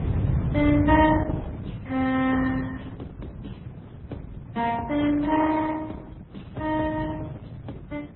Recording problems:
lossy codec; Opus, then MP3, log-spectral distance 3 dB, nothing above 3.4 kHz
wind on the microphone; below 180 Hz, SNR 8 dB

